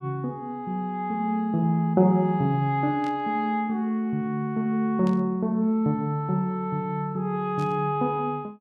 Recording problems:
burst of static; at 3 s, at 5 s and at 7.5 s; peak -15 dB vs average level

